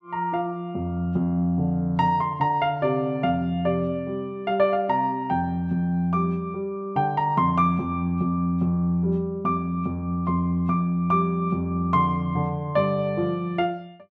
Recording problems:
none

